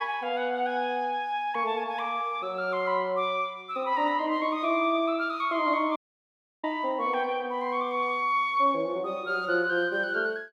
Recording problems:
audio cutting out; at 6 s for 0.5 s

